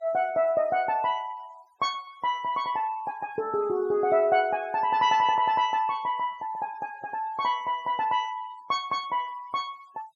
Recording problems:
denoising artefacts; signal-to-artefact ratio 25 dB

